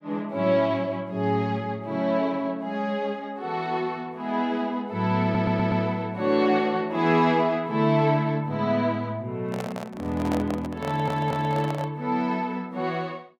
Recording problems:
stutter; at 5 s and at 11 s
microphone handling noise; from 9.5 to 12 s; peak -3 dB vs average level

